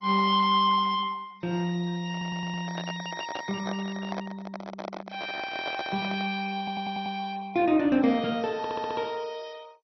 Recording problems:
lossy codec; MP2, log-spectral distance 4 dB, nothing above 5.2 kHz
handling noise; from 2 to 6.5 s; peak -3 dB vs average level
audio stuttering; at 2 s, at 6.5 s and at 8.5 s

